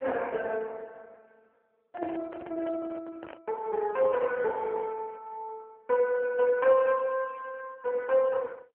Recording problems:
telephone audio; 280 Hz to 3.2 kHz, AMR-NB
handling noise; from 2 to 3.5 s; peak -10 dB vs average level

